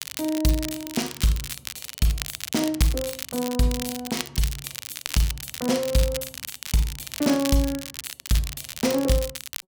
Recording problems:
crackling; vinyl, SNR 7 dB

